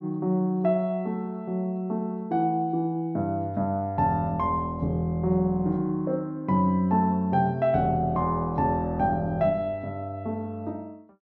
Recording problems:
none

